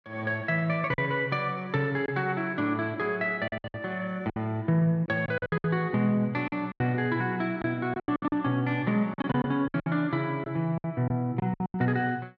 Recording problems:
lost packets; 11% of the sound replaced, filled with silence

